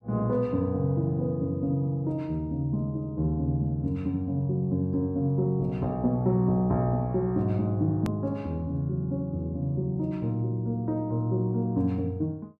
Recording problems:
hard cut with a click; at 8 s

